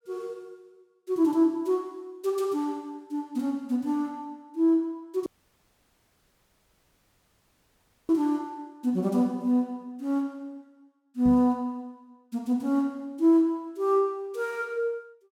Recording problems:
audio cutting out; at 5.5 s for 3 s
microphone thump; at 11 s; peak -3 dB vs average level

